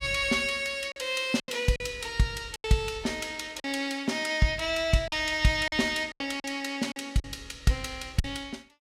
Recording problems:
packet loss; 7% of the sound replaced, filled with silence

